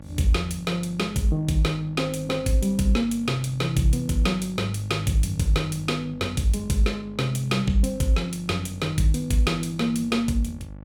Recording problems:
mains hum; 50 Hz, harmonics up to 1.1 kHz, SNR 17 dB

